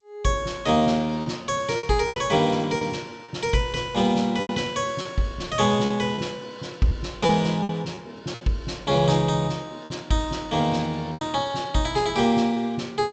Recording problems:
lossy codec; G.722, log-spectral distance 3 dB, nothing above 7.6 kHz
lost packets; 7% of the sound replaced, filled with repeated pitch periods

